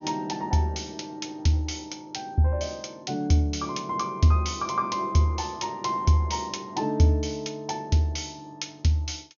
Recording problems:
low-pass filter; nothing above 6.6 kHz

